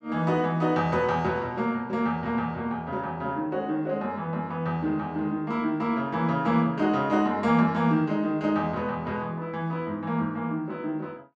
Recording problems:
none

